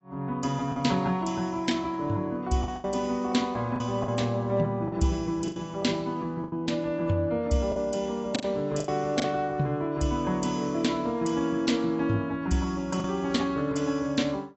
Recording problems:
lossy codec; AAC, log-spectral distance 2 dB, nothing above 7.8 kHz
lost packets; 5% of the sound replaced, filled with the last packet

